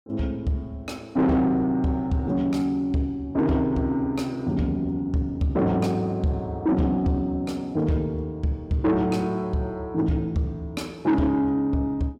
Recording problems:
distorted audio; soft clipping, signal-to-distortion ratio 10 dB

